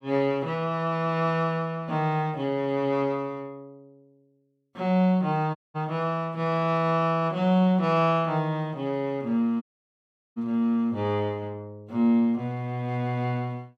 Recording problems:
audio cutting out; at 5.5 s and at 9.5 s for 0.5 s

